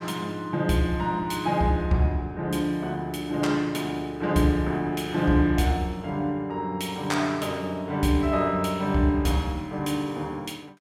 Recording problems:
none

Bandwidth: 16 kHz